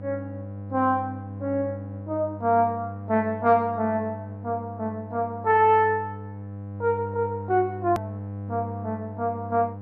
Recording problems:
hum; 50 Hz, harmonics up to 800 Hz, SNR 11 dB
edit click; at 8 s

